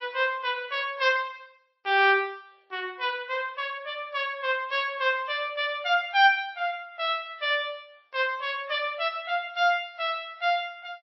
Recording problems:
codec artefacts; MP3, log-spectral distance 2 dB, nothing above 4.8 kHz

